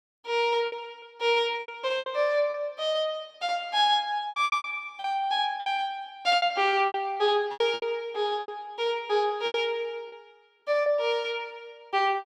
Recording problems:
lost packets; 12% of the sound replaced, filled with repeated pitch periods

